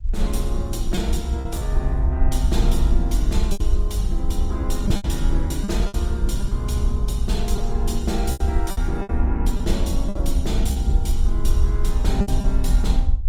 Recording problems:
codec artefacts; Opus, log-spectral distance 2 dB
rumble; below 54 Hz, SNR -2 dB
lost packets; 7% of the sound replaced, filled with repeated pitch periods

